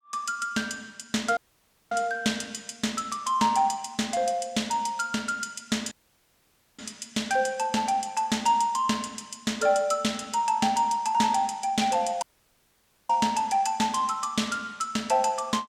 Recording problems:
dropout; at 1.5 s for 0.5 s, at 6 s for 1 s and at 12 s for 1 s

